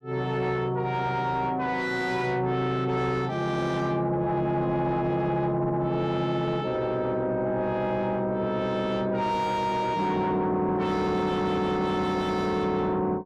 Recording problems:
distortion; soft clipping, signal-to-distortion ratio 10 dB

